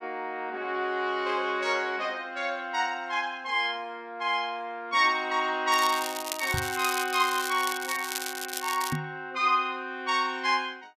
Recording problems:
crackling; from 5.5 to 9 s; loose cable, SNR 7 dB
knock on the microphone; at 6.5 s and at 9 s; peak 0 dB vs average level

